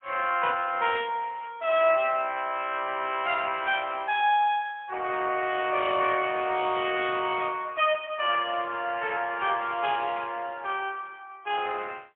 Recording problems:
telephone audio; 320 Hz to 3.4 kHz, AMR-NB, then MP3

